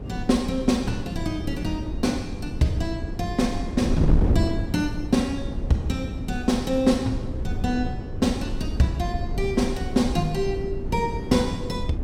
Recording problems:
wind noise; below 190 Hz, SNR 4 dB

